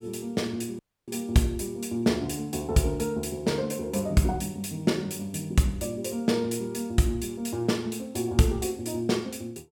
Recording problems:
dropout; at 1 s

